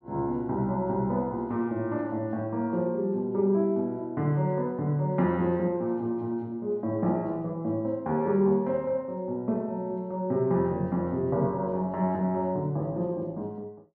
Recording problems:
low-pass filter; nothing above 6.9 kHz

